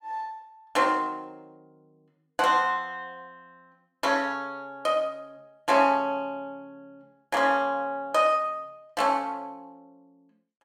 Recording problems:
none

